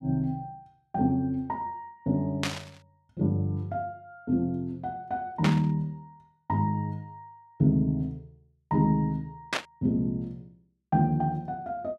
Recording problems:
static burst; at 2.5 s, at 5.5 s and at 9.5 s; peak +5 dB vs average level

